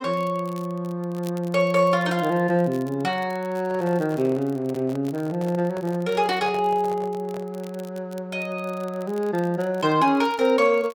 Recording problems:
crackle; vinyl, SNR 26 dB
microphone handling noise; from 3.5 to 7.5 s; peak -10 dB vs average level

